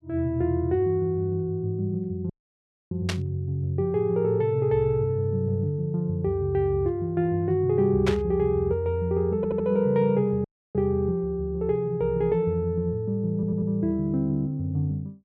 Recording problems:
dropout; at 2.5 s for 0.5 s and at 10 s
static burst; at 3 s and at 8 s; peak 0 dB vs average level
stutter; at 9.5 s and at 13 s

